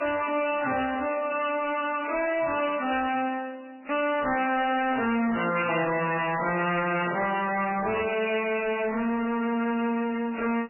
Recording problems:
lossy codec; MP3, then MP3, log-spectral distance 6 dB, nothing above 2.8 kHz
distortion; soft clipping, signal-to-distortion ratio 6 dB

